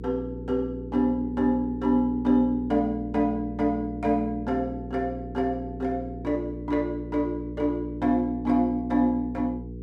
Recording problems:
hum; 60 Hz, harmonics up to 480 Hz, SNR 12 dB

